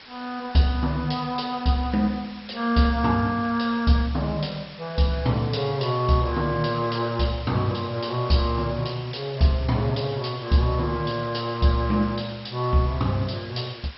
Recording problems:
lossy compression; MP2, log-spectral distance 9 dB, nothing above 5.3 kHz
background hiss; SNR 18 dB

